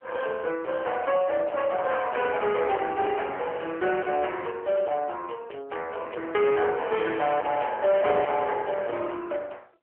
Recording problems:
phone line; 340 Hz to 3.3 kHz, AMR-NB
distortion; hard clipping, signal-to-distortion ratio 10 dB

